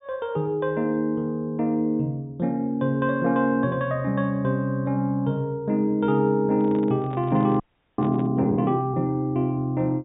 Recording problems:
treble cut off; nothing above 4 kHz
microphone handling noise; from 6.5 to 8.5 s; peak -10 dB vs average level
frozen audio; at 7.5 s

